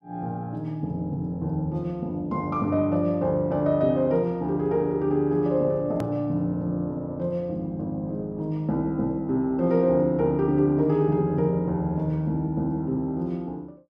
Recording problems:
click at an edit; at 6 s

